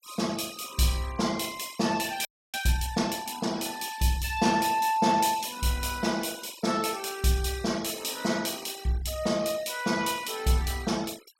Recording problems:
noise reduction artefacts; signal-to-artefact ratio 18 dB
audio freezing; at 2.5 s

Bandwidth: 16 kHz